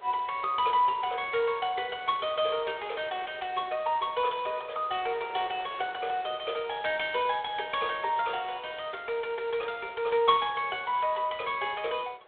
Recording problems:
phone line; 340 Hz to 3.7 kHz, G.726
wind on the microphone; below 1.4 kHz, SNR 21 dB

